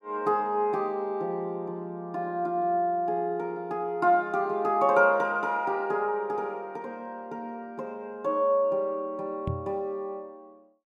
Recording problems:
microphone thump; at 9.5 s; peak 0 dB vs average level

